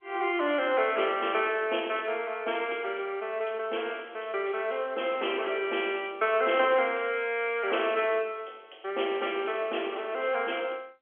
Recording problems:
telephone audio; 300 Hz to 3.3 kHz, G.711

